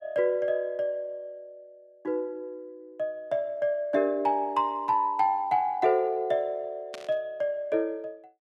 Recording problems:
static burst; at 7 s; peak -9 dB vs average level

